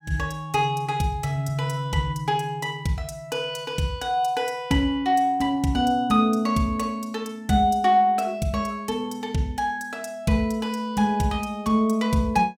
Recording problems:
none

